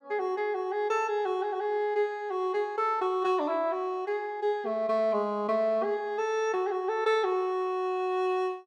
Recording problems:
none

